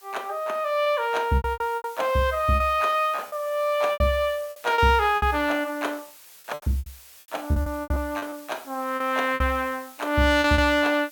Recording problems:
hiss; SNR 22 dB
lost packets; 12% of the sound replaced, filled with repeated pitch periods

